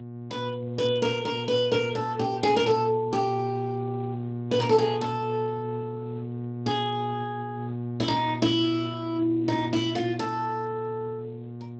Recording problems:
lossy compression; Speex, log-spectral distance 3 dB, nothing above 7.6 kHz
hum; 60 Hz, harmonics up to 720 Hz, SNR 8 dB

